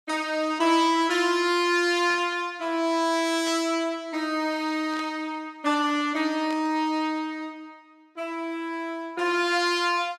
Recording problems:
burst of static; 4 times, first at 2 s; peak -12 dB vs average level

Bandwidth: 15.5 kHz